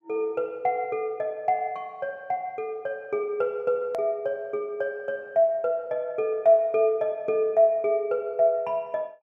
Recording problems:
hard cut with a click; at 4 s

